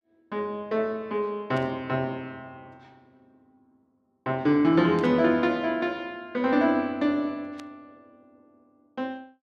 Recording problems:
static burst; at 1.5 s, at 5 s and at 7.5 s; peak -15 dB vs average level

